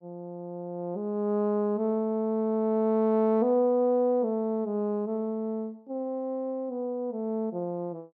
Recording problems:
none

